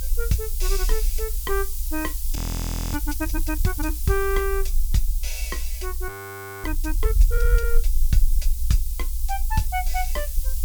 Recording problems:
hiss; SNR 4 dB
low-frequency rumble; below 46 Hz, strongest tone 22 Hz, SNR -2 dB
frozen audio; at 2.5 s for 0.5 s and at 6 s for 0.5 s

